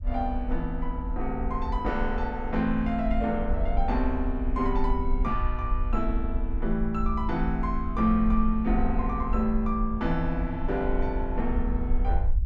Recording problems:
rumble; below 52 Hz, SNR 3 dB

